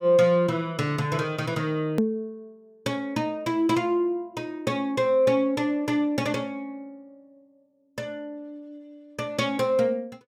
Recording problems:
edit click; at 2 s

